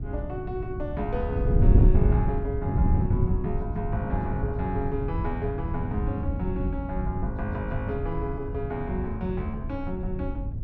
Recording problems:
wind noise; below 120 Hz, SNR -3 dB

